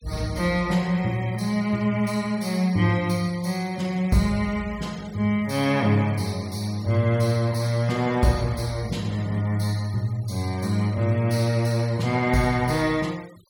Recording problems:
noise reduction artefacts; signal-to-artefact ratio 23 dB

